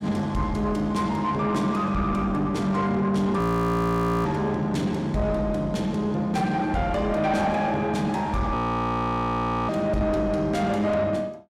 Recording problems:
distortion; soft clipping, signal-to-distortion ratio 11 dB
audio freezing; at 3.5 s for 1 s and at 8.5 s for 1 s

